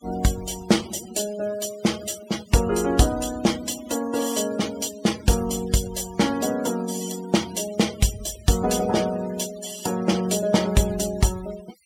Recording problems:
noise reduction artefacts; signal-to-artefact ratio 15 dB

